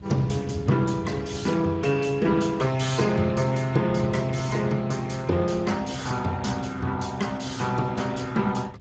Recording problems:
lossy compression; Speex, log-spectral distance 5 dB, nothing above 7.3 kHz
wind on the microphone; below 170 Hz, SNR 14 dB

